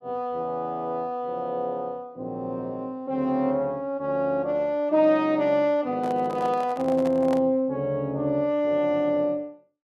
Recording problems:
microphone handling noise; from 6 to 7.5 s; peak -4 dB vs average level

